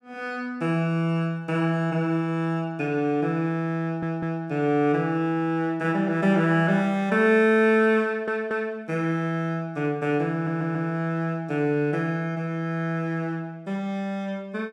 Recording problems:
audio stuttering; at 4 s, at 8 s and at 10 s

